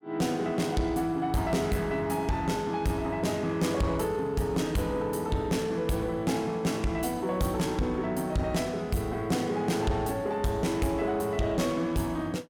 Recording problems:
distortion; soft clipping, signal-to-distortion ratio 11 dB

